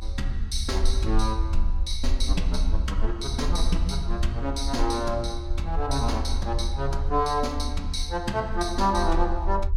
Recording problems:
rumble; below 70 Hz, strongest tone 24 Hz, SNR 1 dB

